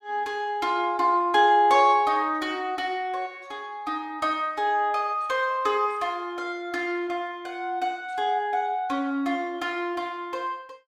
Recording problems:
none

